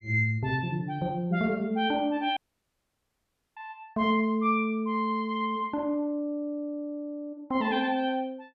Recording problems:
audio cutting out; at 2.5 s for 1 s

